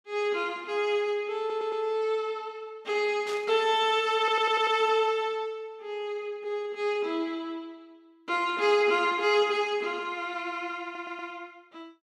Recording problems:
stutter; at 1.5 s, at 4 s and at 11 s
static burst; at 3.5 s; peak -9 dB vs average level

